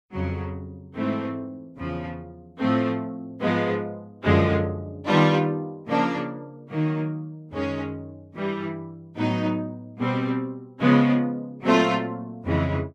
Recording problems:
none

